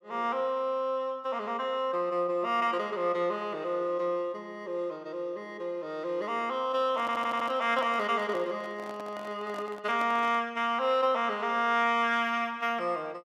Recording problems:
handling noise; from 7 to 10 s; peak -8 dB vs average level
stutter; at 7 s

